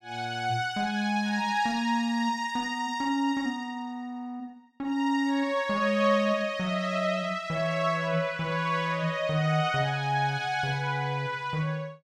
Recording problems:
none

